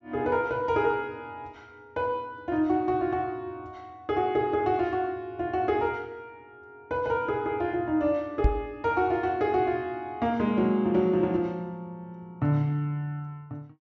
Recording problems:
treble cut off; nothing above 8 kHz
knock on the microphone; at 8.5 s; peak +7 dB vs average level

